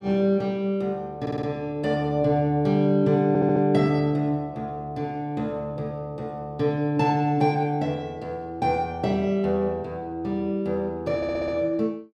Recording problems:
stutter; at 1 s, at 3.5 s and at 11 s

